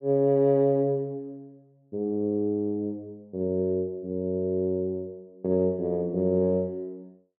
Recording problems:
none

